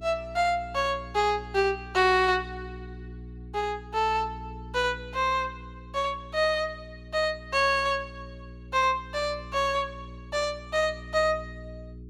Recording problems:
electrical hum; 60 Hz, harmonics up to 420 Hz, SNR 17 dB

